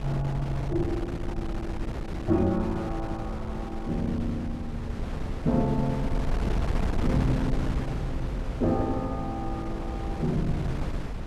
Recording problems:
wind noise; below 180 Hz, SNR 3 dB

